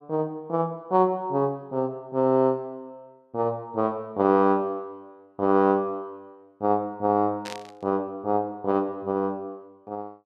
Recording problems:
burst of static; at 7.5 s; peak -8 dB vs average level

